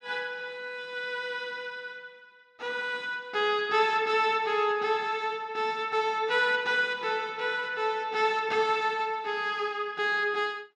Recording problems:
none

